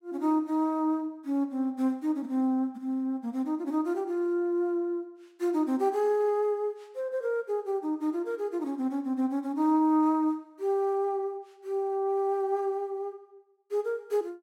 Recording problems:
none

